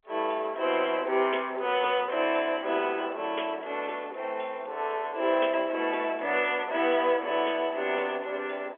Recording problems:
telephone audio; 340 Hz to 3.4 kHz, G.711

